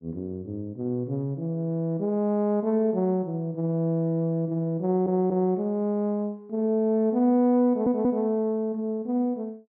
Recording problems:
stutter; at 5 s and at 7.5 s

